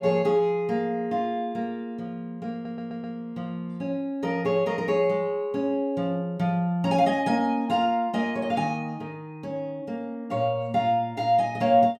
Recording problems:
stutter; at 2.5 s

